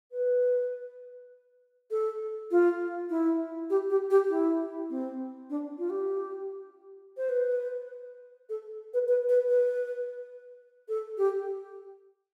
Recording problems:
none

